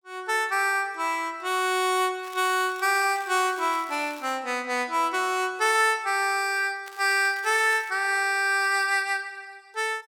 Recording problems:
crackling; from 2 to 4.5 s and from 7 to 8 s; loose cable, SNR 22 dB

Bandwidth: 17 kHz